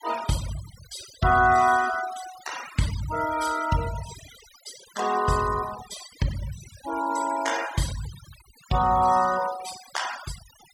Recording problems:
noise reduction artefacts; signal-to-artefact ratio 13 dB

